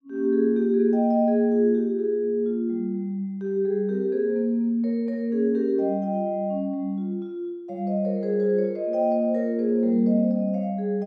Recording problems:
none

